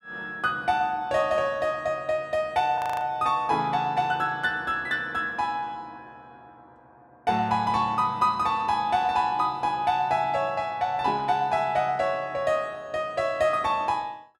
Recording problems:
audio freezing; at 3 s

